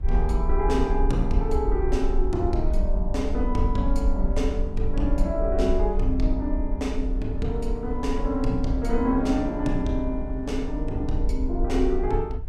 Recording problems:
low-frequency rumble; below 48 Hz, SNR 2 dB
wind noise; below 220 Hz, SNR 16 dB

